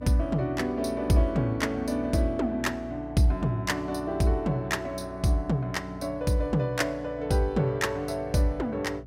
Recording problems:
hum; 60 Hz, harmonics up to 300 Hz, SNR 17 dB

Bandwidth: 16 kHz